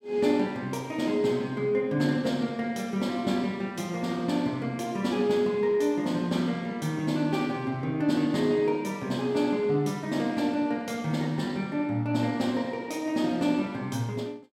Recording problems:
none

